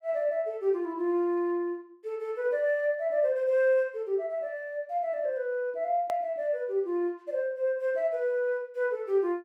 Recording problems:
edit click; at 6 s

